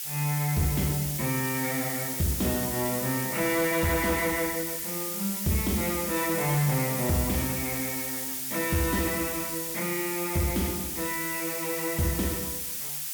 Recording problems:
distorted audio; soft clipping, signal-to-distortion ratio 12 dB
hiss; slope +6 dB per octave, SNR 1 dB

